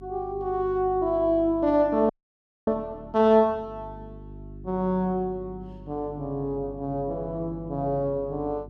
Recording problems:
hum; 50 Hz, harmonics up to 400 Hz, SNR 18 dB
audio freezing; at 2 s for 0.5 s

